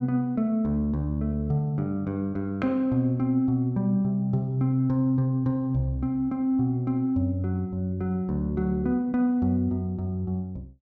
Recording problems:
none

